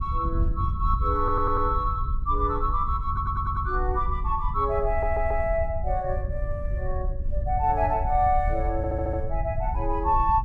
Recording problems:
wind noise; below 76 Hz, SNR 4 dB
audio stuttering; 4 times, first at 1 s

